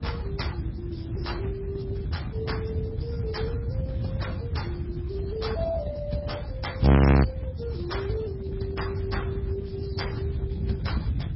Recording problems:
lossy codec; Speex, then MP3, log-spectral distance 2 dB, nothing above 5.5 kHz
low-frequency rumble; below 340 Hz, SNR -3 dB
wind noise; below 150 Hz, SNR -1 dB
audio freezing; at 7 s

